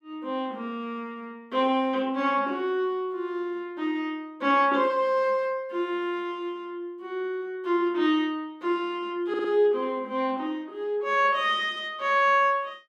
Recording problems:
stutter; at 9.5 s

